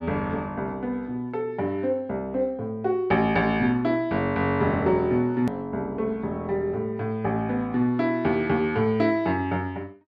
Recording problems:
hard cut with a click; at 5.5 s

